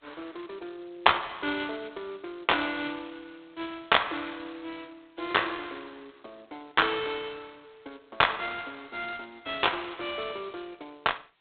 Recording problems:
phone line; 260 Hz to 3.7 kHz, G.726

